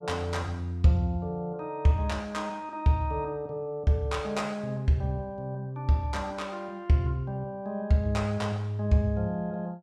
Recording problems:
none

